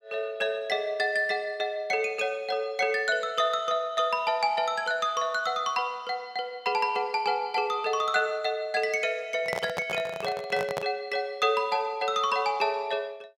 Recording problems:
handling noise; from 9.5 to 11 s; peak 0 dB vs average level

